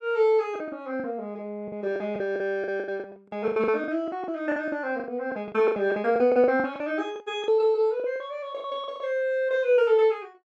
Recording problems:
packet loss; 16% of the sound replaced, filled with the last packet

